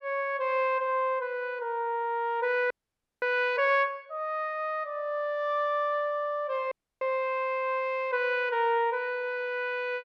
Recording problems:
frozen audio; at 2.5 s for 0.5 s and at 6.5 s

